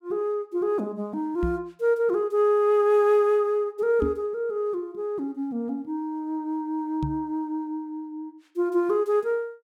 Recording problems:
microphone bump; at 1.5 s, at 4 s and at 7 s; peak +1 dB vs average level

